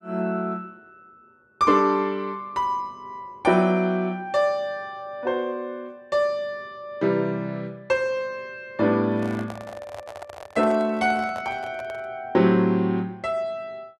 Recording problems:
handling noise; from 9 to 12 s; peak -8 dB vs average level

